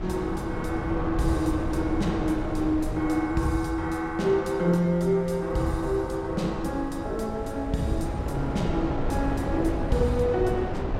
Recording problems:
wind on the microphone; below 420 Hz, SNR 6 dB

